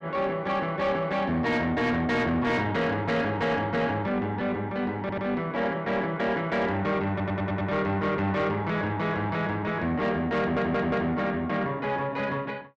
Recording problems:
distortion; soft clipping, signal-to-distortion ratio 11 dB
audio stuttering; at 5 s, at 7 s and at 10 s

